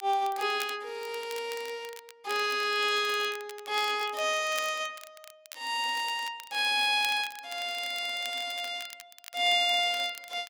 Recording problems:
crackle; vinyl, SNR 17 dB

